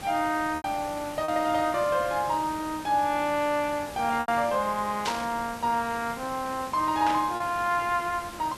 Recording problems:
background hiss; slope -3 dB per octave, SNR 14 dB
packet loss; 3% of the sound replaced, filled with repeated pitch periods
static burst; at 5 s and at 7 s; peak 0 dB vs average level

